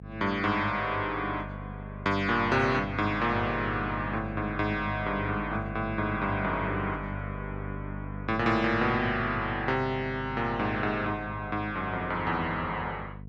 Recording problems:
electrical hum; 50 Hz, harmonics up to 500 Hz, SNR 10 dB

